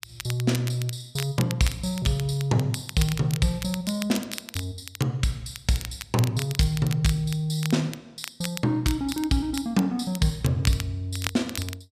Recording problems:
crackling; vinyl, SNR 11 dB

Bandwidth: 14.5 kHz